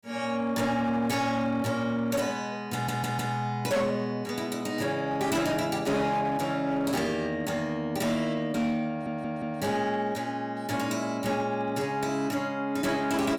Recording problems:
distorted audio; hard clipping, signal-to-distortion ratio 11 dB
stutter; at 2.5 s and at 9 s

